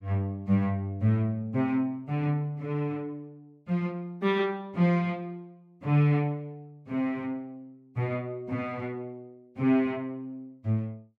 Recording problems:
none

